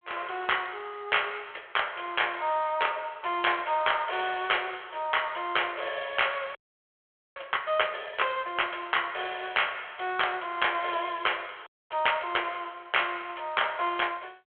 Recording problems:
phone line; 340 Hz to 3.4 kHz, G.726
frozen audio; at 6.5 s for 1 s and at 12 s

